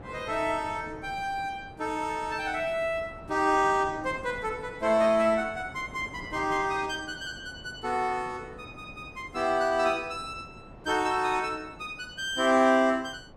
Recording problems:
wind noise; below 620 Hz, SNR 19 dB

